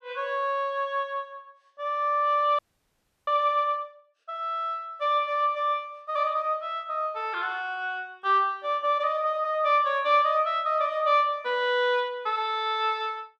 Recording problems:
audio freezing; at 2.5 s for 0.5 s

